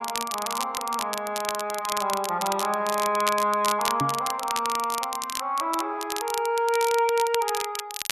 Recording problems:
crackling; vinyl, SNR 7 dB
knock on the microphone; at 4 s; peak 0 dB vs average level

